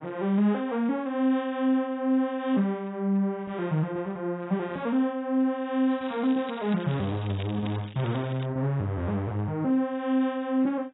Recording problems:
codec artefacts; AAC, log-spectral distance 3 dB, nothing above 3.5 kHz
crackle; from 6 to 8.5 s; loose cable, SNR 19 dB

